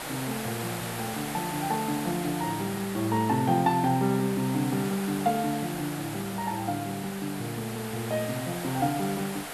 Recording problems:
hiss; SNR 7 dB

